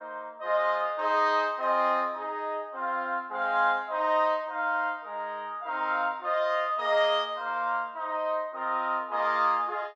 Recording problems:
none

